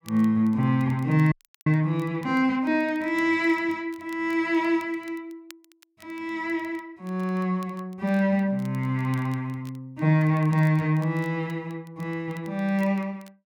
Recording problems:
crackling; vinyl, SNR 29 dB
frozen audio; at 1.5 s

